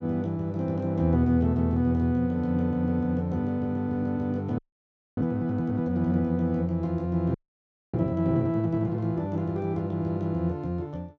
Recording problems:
audio freezing; at 4.5 s for 0.5 s and at 7.5 s for 0.5 s

